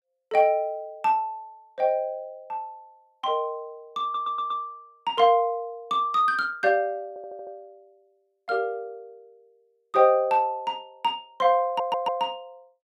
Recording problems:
stutter; at 4 s, at 7 s and at 12 s

